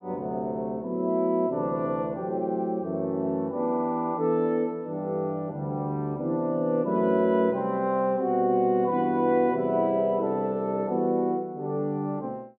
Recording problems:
none

